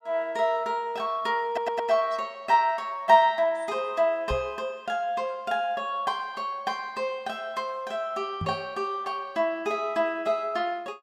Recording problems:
audio stuttering; at 1.5 s
microphone bump; at 4.5 s and at 8.5 s; peak -2 dB vs average level

